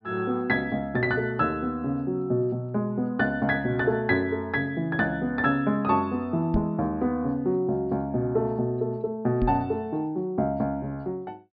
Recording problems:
low-pass filter; nothing above 5.5 kHz
microphone bump; at 6.5 s and at 9.5 s; peak +3 dB vs average level

